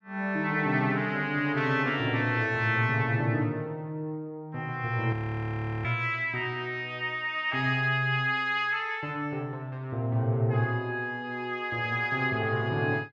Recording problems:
audio freezing; at 5 s for 0.5 s

